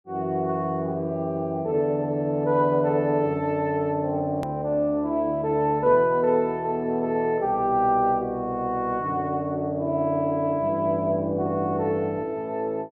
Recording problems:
click at an edit; at 4.5 s

